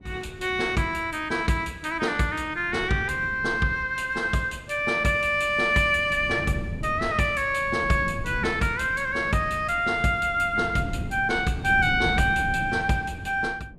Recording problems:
wind noise; below 210 Hz, SNR 13 dB

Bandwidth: 14.5 kHz